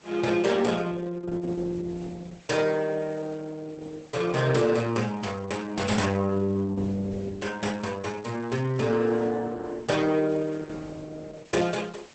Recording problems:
lossy compression; Opus, log-spectral distance 5 dB, nothing above 8.2 kHz
background hiss; slope -2 dB per octave, SNR 26 dB

